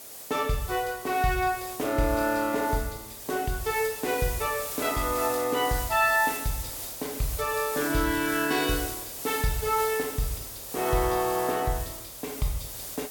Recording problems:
background hiss; SNR 8 dB

